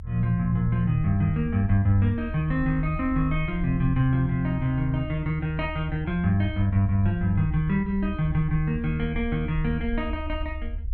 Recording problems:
rumble; below 76 Hz, SNR 10 dB

